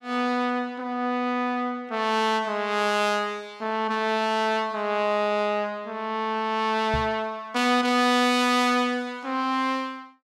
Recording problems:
microphone thump; at 7 s; peak -1 dB vs average level

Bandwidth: 15 kHz